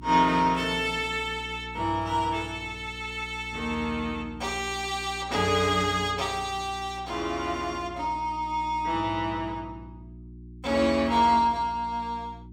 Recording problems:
electrical hum; 60 Hz, harmonics up to 360 Hz, SNR 17 dB

